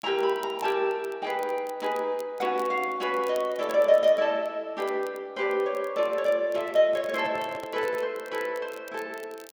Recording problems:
crackle; vinyl, SNR 25 dB
microphone handling noise; from 6.5 to 8 s; peak -10 dB vs average level

